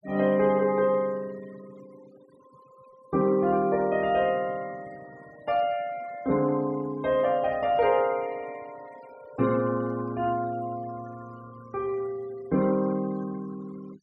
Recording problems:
denoising artefacts; signal-to-artefact ratio 24 dB

